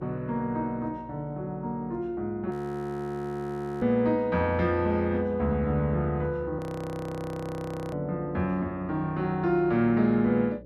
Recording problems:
electrical hum; 60 Hz, harmonics up to 600 Hz, SNR 21 dB
frozen audio; at 2.5 s for 1.5 s and at 6.5 s for 1.5 s

